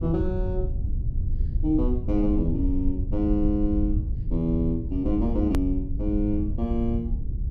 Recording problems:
low-frequency rumble; below 86 Hz, SNR 2 dB
edit click; at 5.5 s

